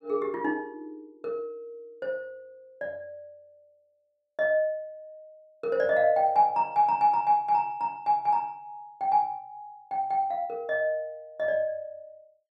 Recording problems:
none

